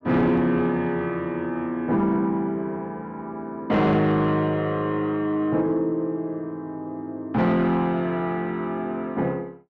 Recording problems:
distorted audio; soft clipping, signal-to-distortion ratio 12 dB

